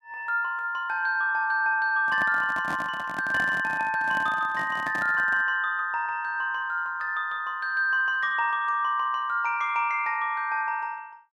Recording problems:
microphone handling noise; from 2 to 5.5 s; peak -6 dB vs average level

